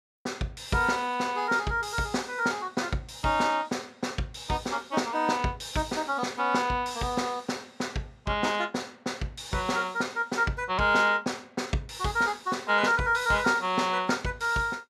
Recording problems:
none

